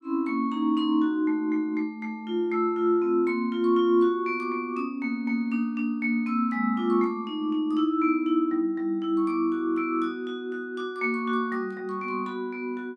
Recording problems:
none

